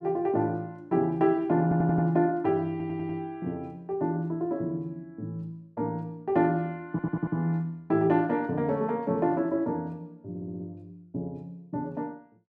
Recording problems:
stutter; 4 times, first at 1.5 s

